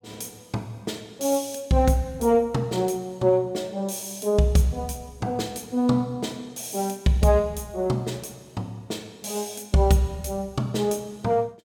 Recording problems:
none

